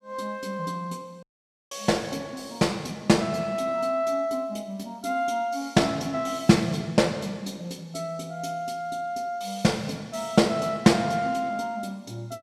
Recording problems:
audio cutting out; at 1 s

